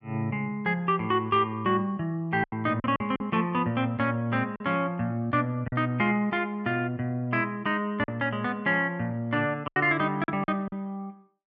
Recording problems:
packet loss; 5% of the sound replaced, filled with silence

